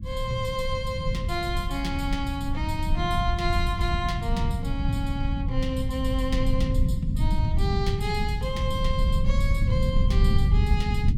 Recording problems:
low-frequency rumble; below 110 Hz, SNR -3 dB

